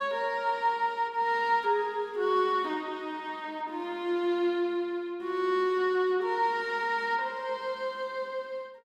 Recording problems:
none

